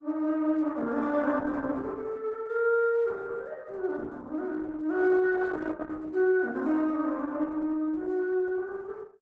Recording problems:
codec artefacts; Opus, log-spectral distance 3 dB

